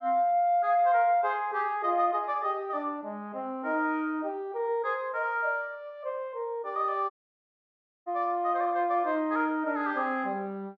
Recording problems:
audio cutting out; at 7 s for 1 s

